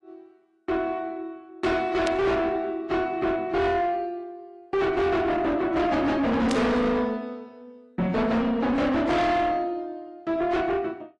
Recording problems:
lossy compression; AAC, log-spectral distance 2 dB, nothing above 10.1 kHz
distorted audio; soft clipping, signal-to-distortion ratio 6 dB
static burst; at 2 s and at 6.5 s; peak -2 dB vs average level

